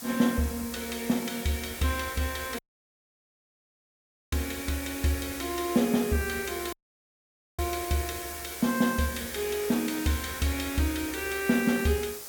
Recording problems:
background hiss; SNR 9 dB
dropout; at 2.5 s for 1.5 s and at 6.5 s for 1 s

